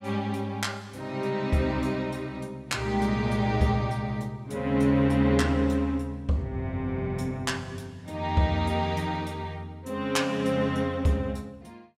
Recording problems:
none

